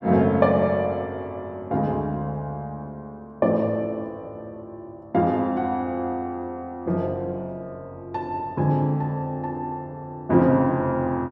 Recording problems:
none

